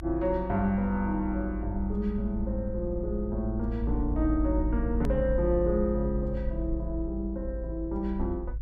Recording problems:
low-frequency rumble; below 56 Hz, strongest tone 52 Hz, SNR 4 dB
click at an edit; at 5 s

